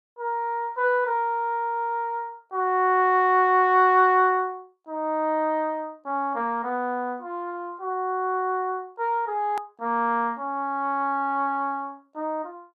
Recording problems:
click at an edit; at 9.5 s

